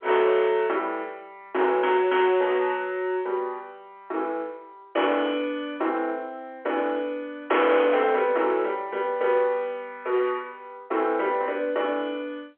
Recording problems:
phone line; 320 Hz to 3.5 kHz, G.711
distortion; hard clipping, signal-to-distortion ratio 12 dB

